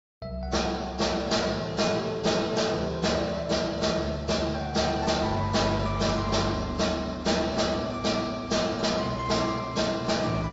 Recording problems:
lossy compression; AAC, log-spectral distance 4 dB, nothing above 7.6 kHz
distortion; hard clipping, uneven, signal-to-distortion ratio 10 dB

